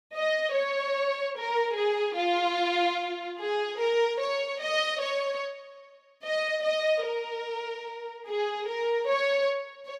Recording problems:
none

